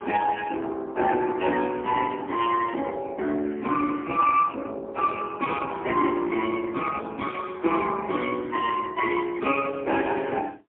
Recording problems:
phone line; 240 Hz to 3.1 kHz, AMR-NB, then MP3

